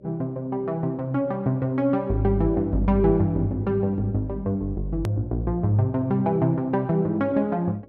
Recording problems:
hum; 60 Hz, harmonics up to 600 Hz, SNR 29 dB
hard cut with a click; at 5 s

